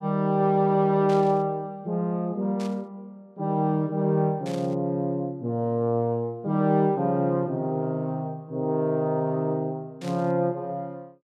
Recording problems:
static burst; 4 times, first at 1 s; peak -12 dB vs average level

